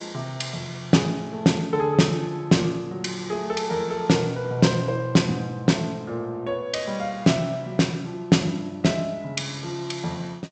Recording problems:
lossy codec; G.722, log-spectral distance 3 dB, nothing above 7.8 kHz

